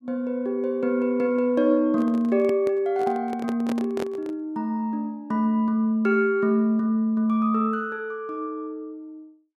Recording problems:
handling noise; from 2 to 4.5 s; peak -4 dB vs average level

